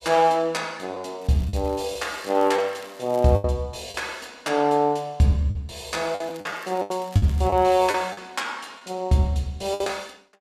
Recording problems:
lost packets; 7% of the sound replaced, filled with the last packet
crackling; from 1 to 3.5 s and from 6 to 8 s; loose cable, SNR 24 dB

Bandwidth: 14.5 kHz